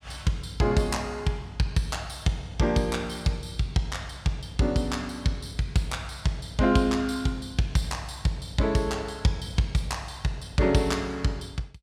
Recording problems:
none

